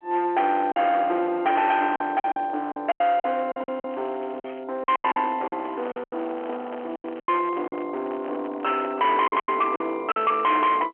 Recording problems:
phone line; 300 Hz to 3.5 kHz, G.711
distortion; hard clipping, uneven, signal-to-distortion ratio 11 dB
packet loss; 11% of the sound replaced, filled with silence
crackling; from 3 to 4.5 s and from 5 to 7.5 s; loose cable, SNR 28 dB
microphone handling noise; from 5.5 to 9.5 s; peak -7 dB vs average level

